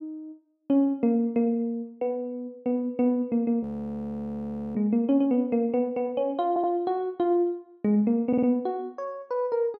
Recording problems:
audio freezing; at 3.5 s for 1 s
stutter; at 6.5 s and at 8.5 s

